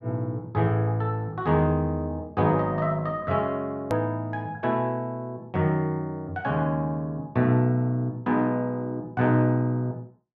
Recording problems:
hard cut with a click; at 4 s

